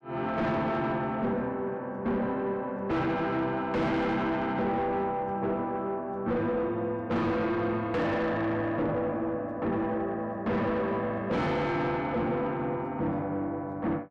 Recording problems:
distortion; soft clipping, signal-to-distortion ratio 7 dB

